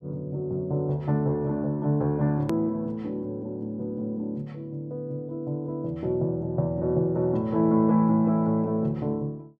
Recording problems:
edit click; at 2.5 s

